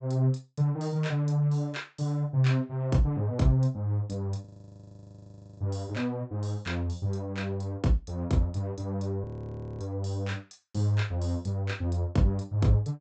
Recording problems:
treble cut off; nothing above 8 kHz
frozen audio; at 4.5 s for 1 s and at 9 s for 0.5 s

